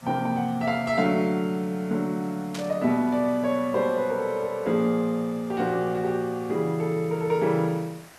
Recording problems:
background hiss; slope -3 dB per octave, SNR 24 dB
burst of static; at 2.5 s; peak -7 dB vs average level

